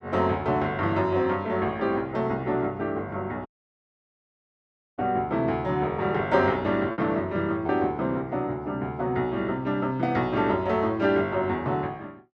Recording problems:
packet loss; 1.1% of the sound replaced, filled with repeated pitch periods
dropout; at 3.5 s for 1.5 s

